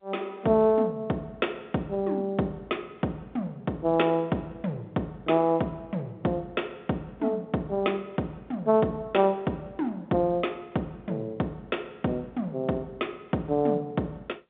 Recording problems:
phone line; 130 Hz to 3.8 kHz, G.711

